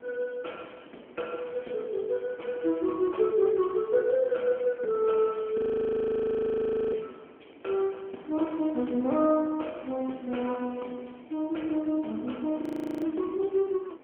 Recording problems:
telephone audio; 190 Hz to 3.2 kHz, AMR-NB
hiss; SNR 25 dB
frozen audio; at 5.5 s for 1.5 s and at 13 s

